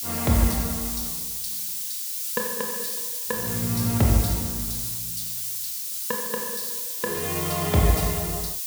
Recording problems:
background hiss; SNR 0 dB

